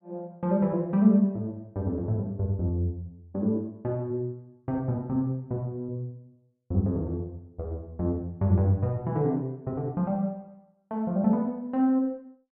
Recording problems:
none

